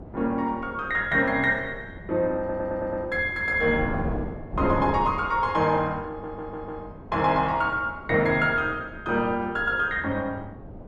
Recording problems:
wind noise; below 410 Hz, SNR 13 dB
audio stuttering; at 2.5 s and at 6 s

